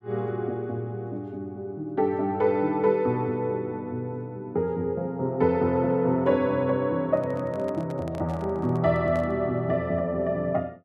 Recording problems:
handling noise; from 7 to 9.5 s; peak -10 dB vs average level

